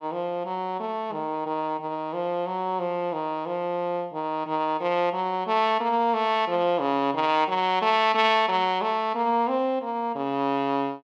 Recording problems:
none

